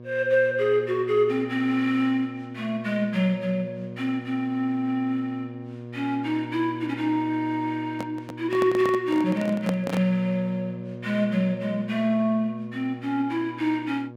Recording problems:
electrical hum; 60 Hz, harmonics up to 1.1 kHz, SNR 14 dB
microphone handling noise; from 8 to 10 s; peak 0 dB vs average level

